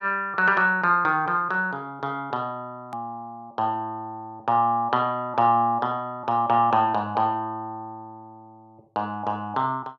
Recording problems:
edit click; at 3 s

